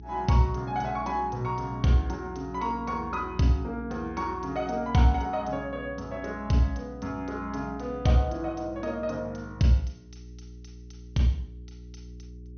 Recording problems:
low-pass filter; nothing above 6.3 kHz
hum; 60 Hz, harmonics up to 420 Hz, SNR 17 dB

